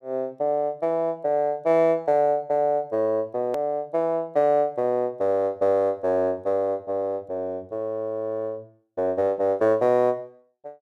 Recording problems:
click at an edit; at 3.5 s

